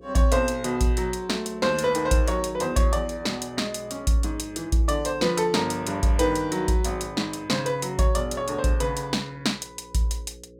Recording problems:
hum; 60 Hz, harmonics up to 540 Hz, SNR 24 dB

